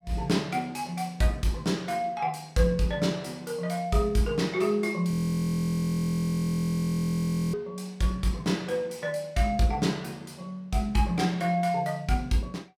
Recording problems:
audio freezing; at 5 s for 2.5 s

